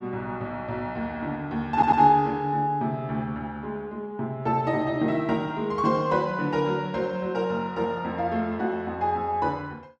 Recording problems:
stutter; at 1.5 s

